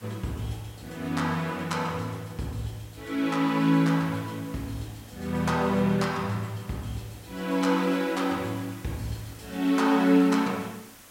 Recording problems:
hiss; slope -2 dB per octave, SNR 22 dB

